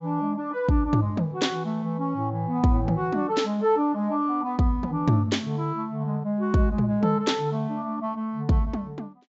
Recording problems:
low-pass filter; nothing above 7.6 kHz

